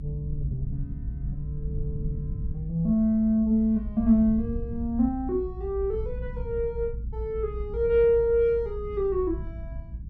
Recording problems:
low-frequency rumble; below 88 Hz, SNR 10 dB

